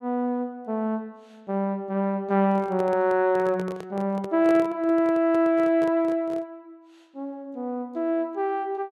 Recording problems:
handling noise; from 2.5 to 6.5 s; peak -6 dB vs average level

